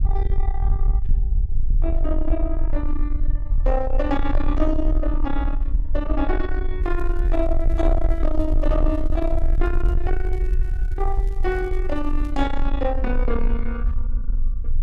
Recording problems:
distorted audio; soft clipping, signal-to-distortion ratio 11 dB
low-frequency rumble; below 46 Hz, strongest tone 20 Hz, SNR -1 dB
crackling; from 7 to 12 s; loose cable, SNR 29 dB

